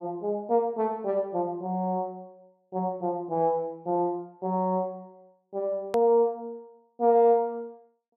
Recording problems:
hard cut with a click; at 6 s

